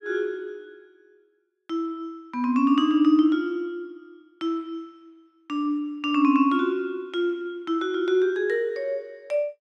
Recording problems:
none

